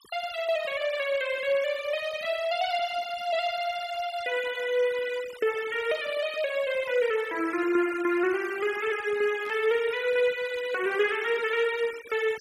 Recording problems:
denoising artefacts; signal-to-artefact ratio 17 dB
burst of static; at 9.5 s; peak -15 dB vs average level

